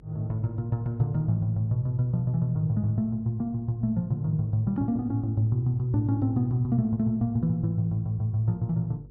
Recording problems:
hum; 50 Hz, harmonics up to 500 Hz, SNR 25 dB

